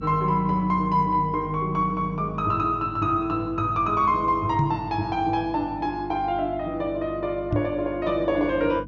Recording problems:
treble cut off; nothing above 7 kHz
hum; 50 Hz, harmonics up to 300 Hz, SNR 15 dB
microphone thump; at 4.5 s and at 7.5 s; peak +4 dB vs average level

